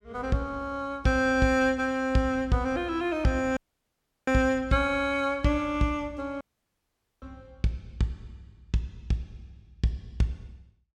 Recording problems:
audio cutting out; at 3.5 s for 0.5 s and at 6.5 s for 1 s

